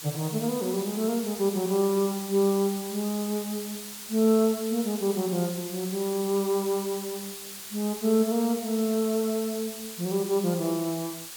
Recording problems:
hiss; slope +2 dB per octave, SNR 10 dB

